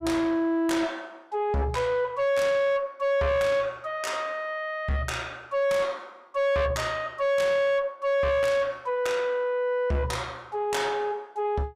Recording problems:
distortion; soft clipping, signal-to-distortion ratio 7 dB

